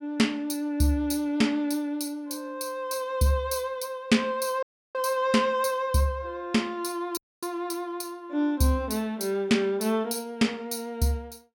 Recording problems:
dropout; at 4.5 s and at 7 s

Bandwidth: 17.5 kHz